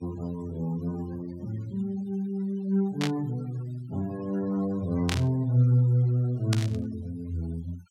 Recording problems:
noise reduction artefacts; signal-to-artefact ratio 23 dB
burst of static; at 3 s, at 5 s and at 6.5 s; peak +1 dB vs average level

